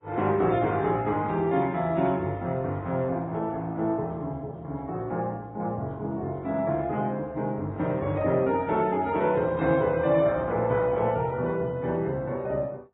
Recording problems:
lossy compression; AAC, then Vorbis, log-spectral distance 2 dB, nothing above 3.2 kHz

